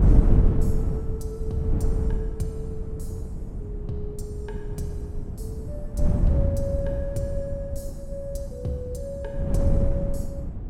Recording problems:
wind noise; below 110 Hz, SNR -6 dB

